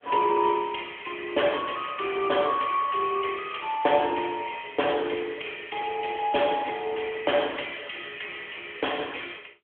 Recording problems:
telephone audio; 300 Hz to 3.3 kHz, AMR-NB

